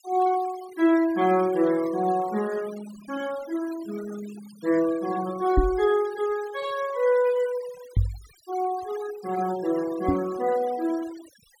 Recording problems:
denoising artefacts; signal-to-artefact ratio 19 dB
microphone thump; at 5.5 s, at 8 s and at 10 s; peak +6 dB vs average level

